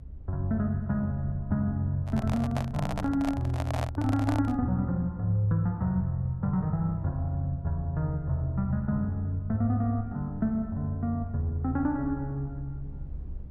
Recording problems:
low-frequency rumble; below 72 Hz, SNR 15 dB
microphone handling noise; from 2 to 4.5 s; peak -1 dB vs average level

